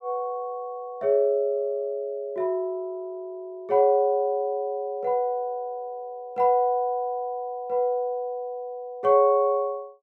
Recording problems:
none

